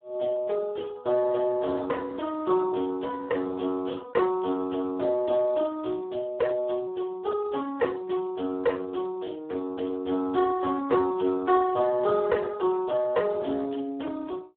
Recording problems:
telephone audio; 300 Hz to 3 kHz, Speex

